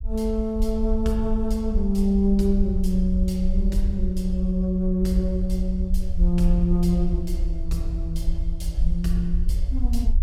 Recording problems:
rumble; below 54 Hz, SNR 2 dB

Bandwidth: 16.5 kHz